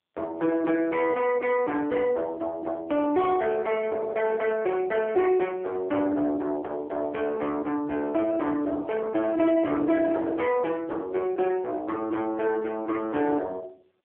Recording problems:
phone line; 260 Hz to 2.6 kHz, AMR-NB
distorted audio; soft clipping, signal-to-distortion ratio 10 dB

